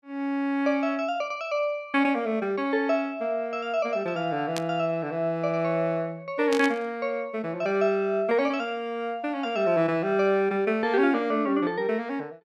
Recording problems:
static burst; at 4.5 s and at 6.5 s; peak -3 dB vs average level

